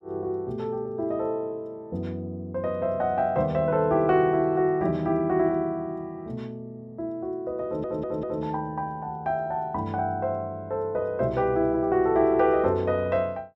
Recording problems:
audio stuttering; at 7.5 s

